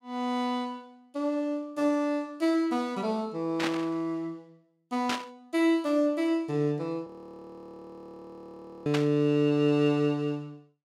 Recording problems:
burst of static; at 3.5 s, at 5 s and at 9 s; peak +1 dB vs average level
audio freezing; at 7 s for 2 s

